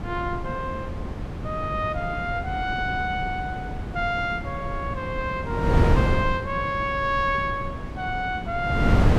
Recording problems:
wind noise; below 250 Hz, SNR 2 dB

